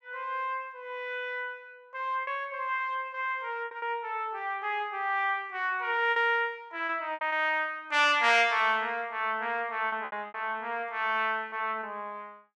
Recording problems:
packet loss; 5% of the sound replaced, filled with repeated pitch periods

